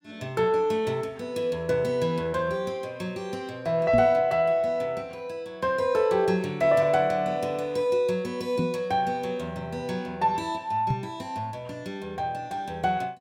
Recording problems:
knock on the microphone; at 4 s, at 8.5 s and at 11 s; peak +3 dB vs average level

